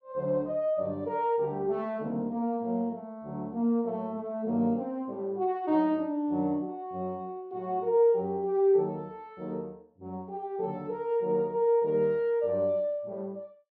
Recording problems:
none

